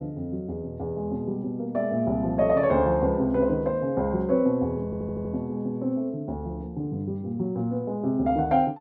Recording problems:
audio stuttering; at 5 s

